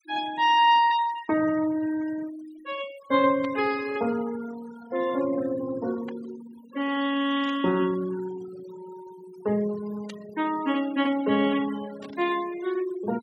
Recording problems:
denoising artefacts; signal-to-artefact ratio 18 dB
burst of static; 5 times, first at 3.5 s; peak -12 dB vs average level

